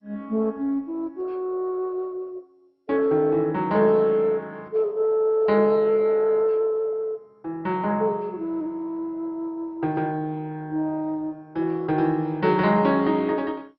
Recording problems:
lossy compression; MP2, log-spectral distance 2 dB, nothing above 4.6 kHz

